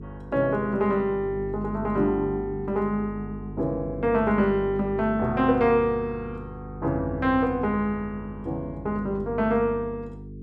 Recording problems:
hum; 50 Hz, harmonics up to 450 Hz, SNR 12 dB

